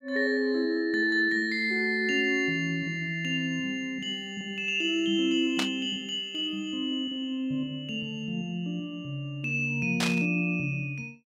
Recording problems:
static burst; at 5.5 s and at 10 s; peak +3 dB vs average level

